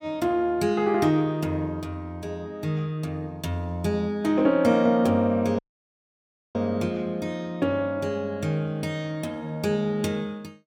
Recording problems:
audio cutting out; at 5.5 s for 1 s

